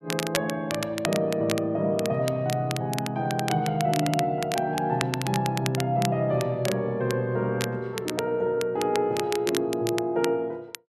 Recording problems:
crackle; vinyl, SNR 9 dB

